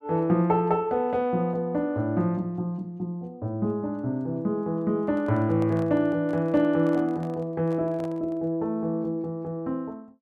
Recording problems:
microphone handling noise; from 5 to 8.5 s; peak -10 dB vs average level

